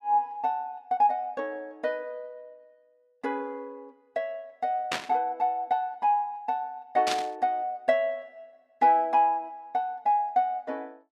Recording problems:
burst of static; at 5 s and at 7 s; peak +2 dB vs average level

